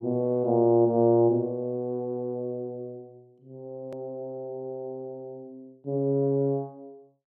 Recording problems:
edit click; at 4 s

